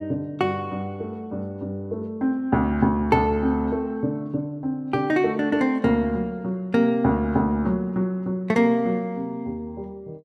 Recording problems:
none

